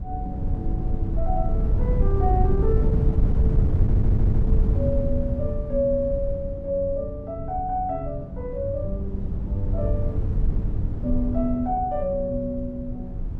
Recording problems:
hum; 60 Hz, harmonics up to 660 Hz, SNR 17 dB
wind on the microphone; below 100 Hz, SNR -3 dB
audio stuttering; at 4 s

